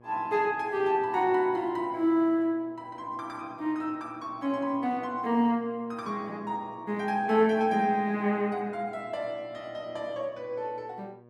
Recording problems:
electrical hum; 60 Hz, harmonics up to 1.7 kHz, SNR 25 dB

